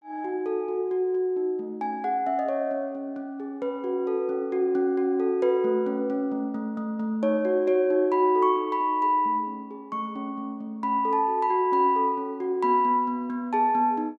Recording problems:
none

